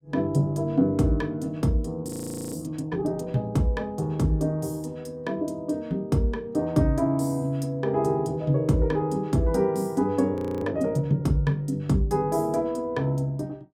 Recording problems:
audio freezing; at 2 s and at 10 s

